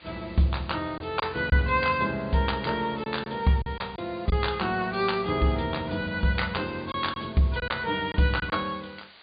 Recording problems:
treble missing; nothing above 4.8 kHz
hiss; SNR 24 dB
lost packets; 4% of the sound replaced, filled with silence

